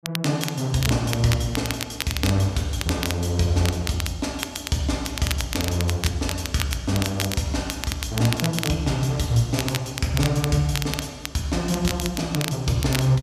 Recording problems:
crackle; vinyl, SNR 7 dB

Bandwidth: 14.5 kHz